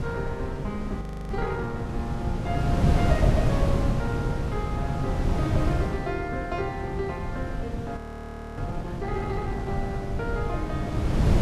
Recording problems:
wind noise; below 200 Hz, SNR -4 dB
frozen audio; at 1 s and at 8 s for 0.5 s

